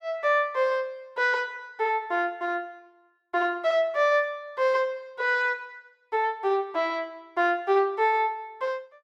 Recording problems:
none

